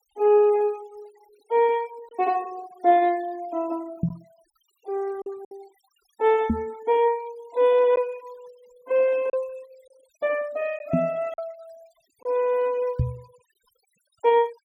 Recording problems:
denoising artefacts; signal-to-artefact ratio 27 dB
lost packets; 2% of the sound replaced, filled with silence
microphone bump; 4 times, first at 4 s; peak +4 dB vs average level

